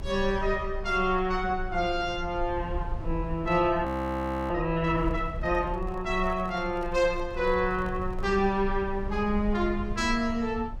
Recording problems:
low-frequency rumble; below 66 Hz, strongest tone 24 Hz, SNR 10 dB
frozen audio; at 4 s for 0.5 s
handling noise; from 5 to 8.5 s; peak -13 dB vs average level

